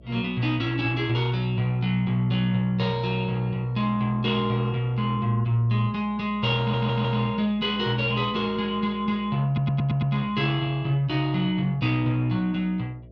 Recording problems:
electrical hum; 60 Hz, harmonics up to 660 Hz, SNR 24 dB
audio stuttering; at 6.5 s and at 9.5 s

